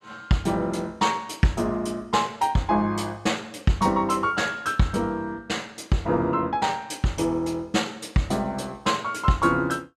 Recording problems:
none

